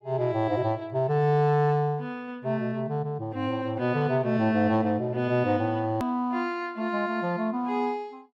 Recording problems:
click at an edit; at 6 s

